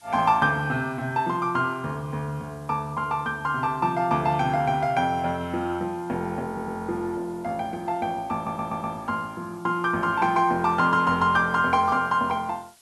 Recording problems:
hiss; slope +1 dB per octave, SNR 30 dB
stutter; at 6.5 s and at 8.5 s

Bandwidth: 12 kHz